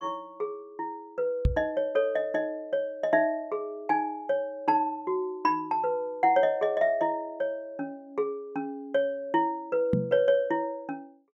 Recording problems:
microphone thump; at 1.5 s and at 10 s; peak +7 dB vs average level

